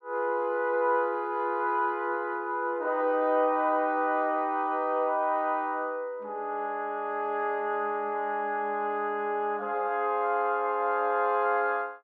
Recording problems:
none

